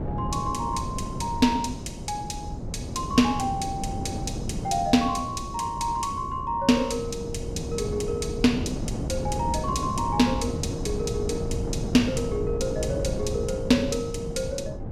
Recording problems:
wind noise; below 290 Hz, SNR 5 dB

